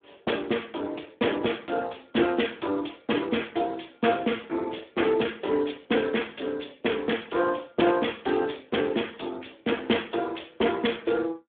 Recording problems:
telephone audio; 240 Hz to 3.5 kHz, Speex

